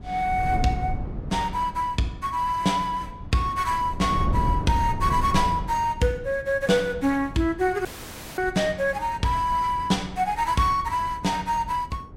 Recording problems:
wind noise; below 150 Hz, SNR 10 dB
audio cutting out; at 8 s for 0.5 s

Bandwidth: 16 kHz